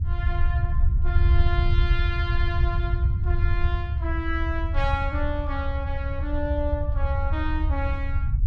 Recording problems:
rumble; below 78 Hz, SNR -6 dB

